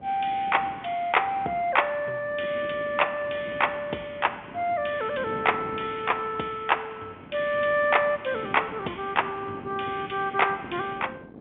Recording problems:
phone line; 280 Hz to 3.5 kHz, G.711
wind on the microphone; below 470 Hz, SNR 17 dB

